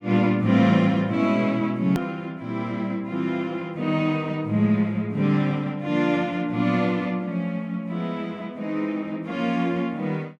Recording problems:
click at an edit; at 2 s

